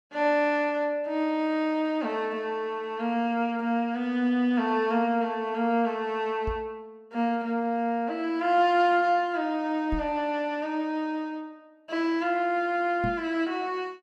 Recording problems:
knock on the microphone; at 6.5 s, at 10 s and at 13 s; peak -1 dB vs average level

